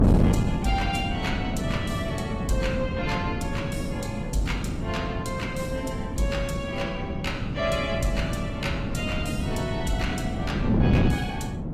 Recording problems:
lossy codec; AAC, log-spectral distance 2 dB
distorted audio; soft clipping, signal-to-distortion ratio 12 dB
wind noise; below 250 Hz, SNR -2 dB

